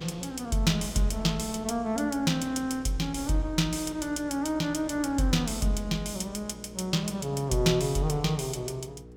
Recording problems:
hum; 60 Hz, harmonics up to 480 Hz, SNR 19 dB
wind noise; below 710 Hz, SNR 24 dB

